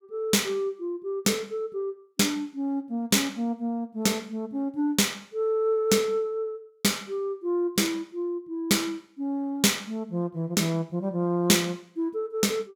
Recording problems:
none

